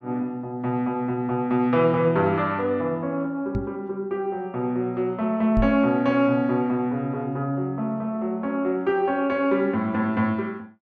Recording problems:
microphone bump; at 3.5 s and at 5.5 s; peak +2 dB vs average level

